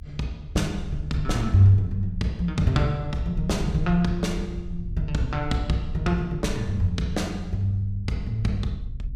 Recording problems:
low-frequency rumble; below 78 Hz, SNR 10 dB

